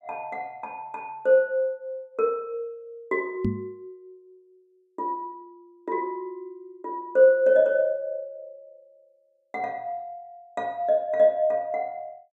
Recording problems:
microphone thump; at 3.5 s; peak +2 dB vs average level

